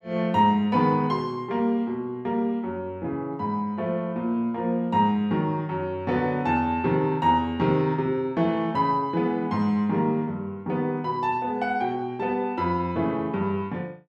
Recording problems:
none

